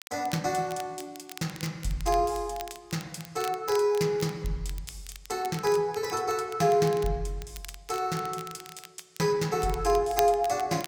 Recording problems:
crackling; vinyl, SNR 17 dB

